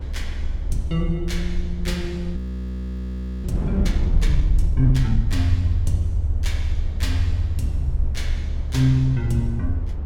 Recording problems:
low-frequency rumble; below 70 Hz, SNR 1 dB
wind noise; below 190 Hz, SNR 10 dB
audio freezing; at 2.5 s for 1 s

